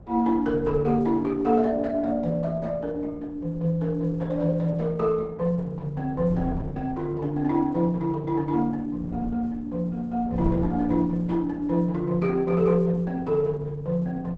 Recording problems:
lossy codec; Opus, log-spectral distance 2 dB, nothing above 7.6 kHz
wind noise; below 200 Hz, SNR 16 dB

